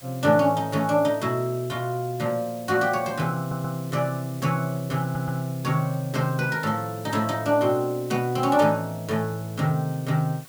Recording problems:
hiss; SNR 20 dB
stutter; at 3.5 s and at 5 s

